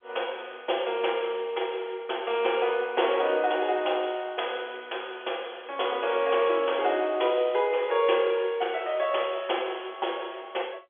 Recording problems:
phone line; 320 Hz to 3.4 kHz, G.711

